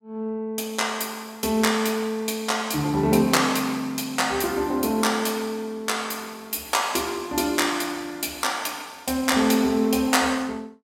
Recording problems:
none

